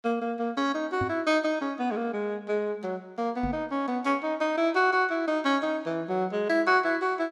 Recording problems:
microphone bump; at 1 s and at 3.5 s; peak -3 dB vs average level

